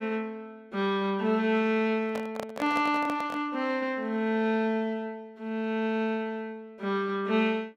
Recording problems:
handling noise; from 2 to 3.5 s; peak -3 dB vs average level

